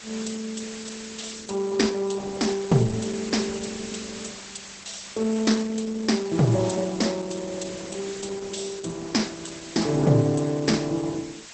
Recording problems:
codec artefacts; Opus, log-spectral distance 18 dB, nothing above 8.2 kHz
hiss; slope +1 dB per octave, SNR 13 dB

